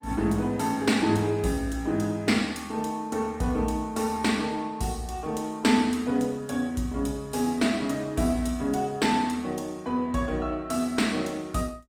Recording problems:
lossy compression; Opus, log-spectral distance 3 dB, nothing above 19 kHz

